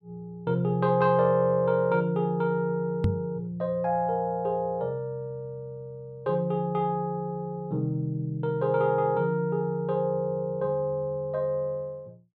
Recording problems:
knock on the microphone; at 3 s; peak +5 dB vs average level

